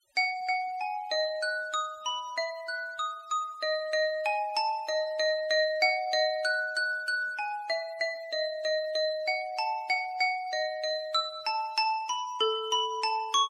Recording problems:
noise reduction artefacts; signal-to-artefact ratio 24 dB

